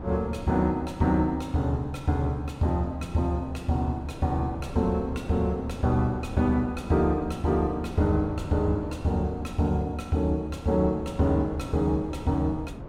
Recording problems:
wind noise; below 400 Hz, SNR 14 dB

